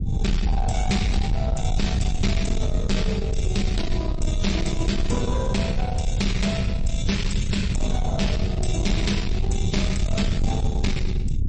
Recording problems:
lossy compression; MP3, log-spectral distance 2 dB, nothing above 8.2 kHz
distorted audio; soft clipping, signal-to-distortion ratio 10 dB
rumble; below 110 Hz, SNR -1 dB

